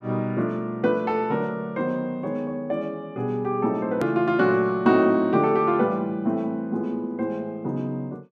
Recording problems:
edit click; at 4 s

